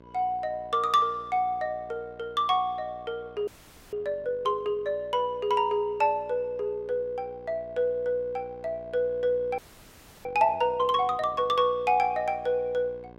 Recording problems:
hum; 60 Hz, harmonics up to 2.2 kHz, SNR 23 dB
frozen audio; at 3.5 s and at 9.5 s for 0.5 s

